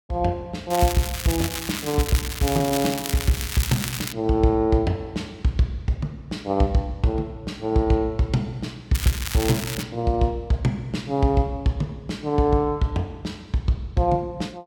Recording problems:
crackling; from 0.5 to 4 s and at 9 s; loose cable, SNR 6 dB

